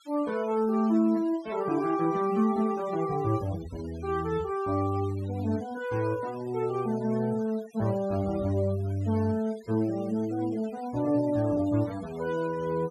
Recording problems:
denoising artefacts; signal-to-artefact ratio 21 dB

